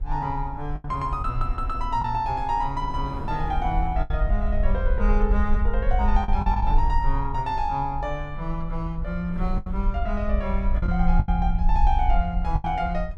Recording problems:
rumble; below 54 Hz, SNR 0 dB
wind on the microphone; below 340 Hz, SNR 17 dB
packet loss; 5% of the sound replaced, filled with the last packet

